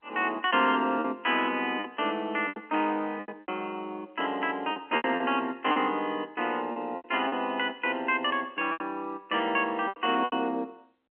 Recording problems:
phone line; 220 Hz to 3.3 kHz, G.711
lost packets; 9% of the sound replaced, filled with repeated pitch periods

